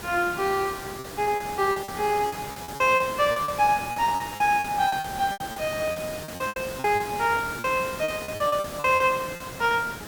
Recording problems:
hiss; slope -4 dB per octave, SNR 11 dB
packet loss; 14% of the sound replaced, filled with repeated pitch periods

